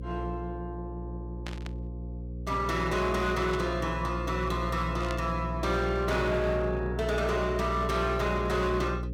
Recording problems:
distortion; hard clipping, signal-to-distortion ratio 11 dB
hum; 60 Hz, harmonics up to 540 Hz, SNR 6 dB
burst of static; at 1.5 s, at 3.5 s and at 5 s; peak -6 dB vs average level

